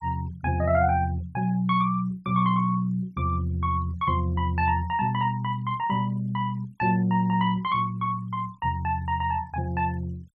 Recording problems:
denoising artefacts; signal-to-artefact ratio 27 dB

